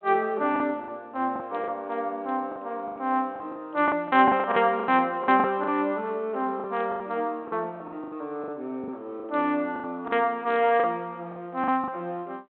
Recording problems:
telephone audio; 220 Hz to 3.7 kHz, G.726
packet loss; 12% of the sound replaced, filled with the last packet

